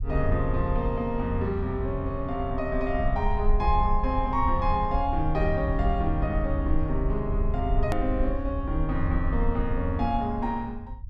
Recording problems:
rumble; below 64 Hz, SNR 3 dB
hard cut with a click; at 8 s

